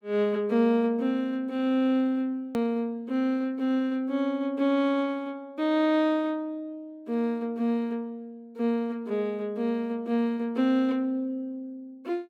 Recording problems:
hard cut with a click; at 2.5 s

